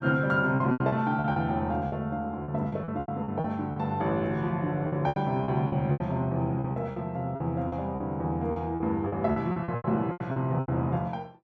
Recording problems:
packet loss; 14% of the sound replaced, filled with repeated pitch periods

